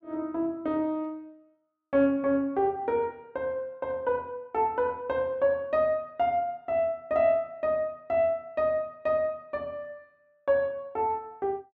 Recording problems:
none

